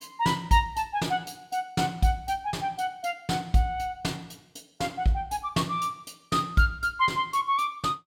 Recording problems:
none

